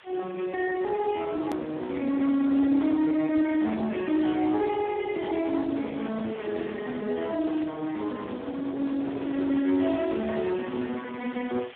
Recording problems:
telephone audio; 220 Hz to 2.2 kHz, Speex
distortion; soft clipping, signal-to-distortion ratio 13 dB
hiss; SNR 21 dB
hard cut with a click; at 1.5 s

